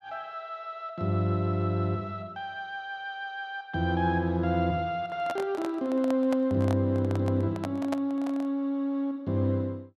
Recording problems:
handling noise; from 5 to 8.5 s; peak -1 dB vs average level

